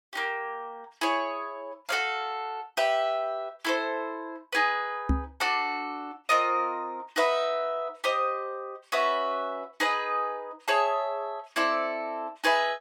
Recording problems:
microphone bump; at 5 s; peak +6 dB vs average level

